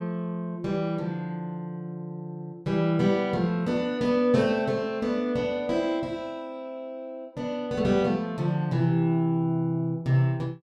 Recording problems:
none

